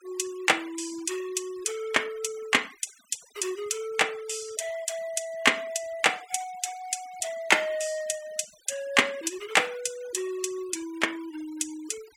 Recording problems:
denoising artefacts; signal-to-artefact ratio 20 dB

